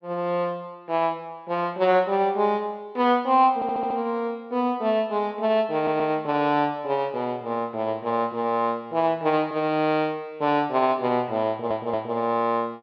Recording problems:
stutter; at 3.5 s, at 6 s and at 11 s

